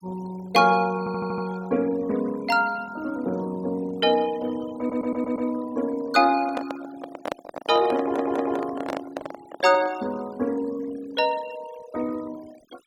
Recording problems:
denoising artefacts; signal-to-artefact ratio 20 dB
stutter; at 1 s, at 5 s and at 8 s
microphone handling noise; from 6.5 to 10 s; peak -1 dB vs average level

